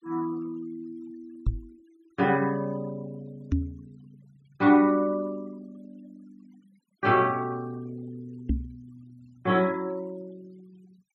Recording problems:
noise reduction artefacts; signal-to-artefact ratio 28 dB
knock on the microphone; at 1.5 s, at 3.5 s and at 8.5 s; peak +4 dB vs average level

